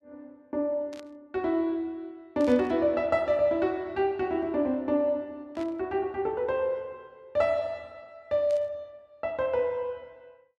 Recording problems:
static burst; 4 times, first at 1 s; peak -14 dB vs average level

